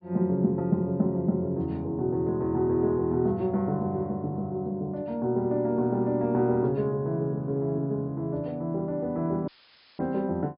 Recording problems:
treble missing; nothing above 5.5 kHz
audio cutting out; at 9.5 s for 0.5 s; filled with static

